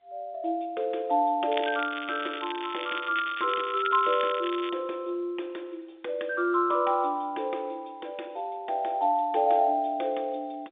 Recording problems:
phone line; 300 Hz to 3.7 kHz, G.711
crackle; from 1.5 to 4.5 s; loose cable, SNR 10 dB

